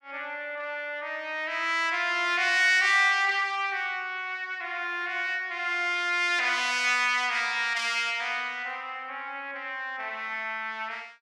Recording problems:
none

